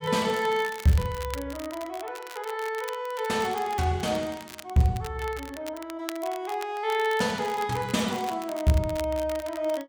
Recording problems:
crackle; vinyl, SNR 15 dB

